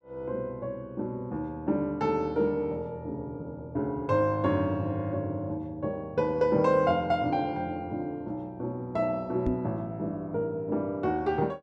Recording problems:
microphone thump; at 9.5 s; peak +4 dB vs average level

